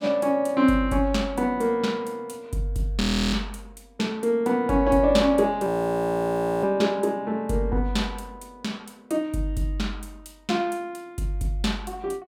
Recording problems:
audio freezing; at 3 s and at 5.5 s for 1 s

